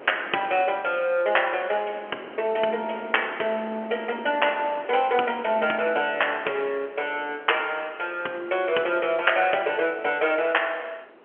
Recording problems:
phone line; 300 Hz to 3.2 kHz, G.711
wind on the microphone; below 1.1 kHz, SNR 20 dB

